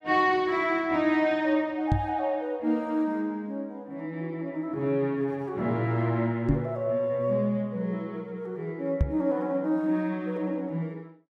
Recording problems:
microphone thump; at 2 s, at 6.5 s and at 9 s; peak +7 dB vs average level

